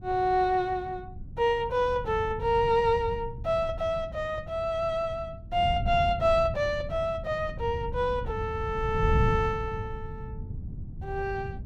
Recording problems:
wind noise; below 140 Hz, SNR 9 dB

